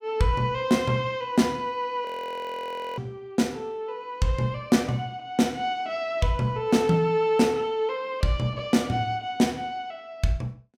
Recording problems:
audio freezing; at 2 s for 1 s

